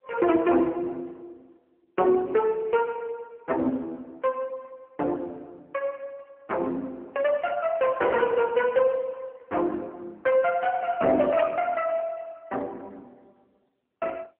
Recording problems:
phone line; 220 Hz to 3.1 kHz, AMR-NB

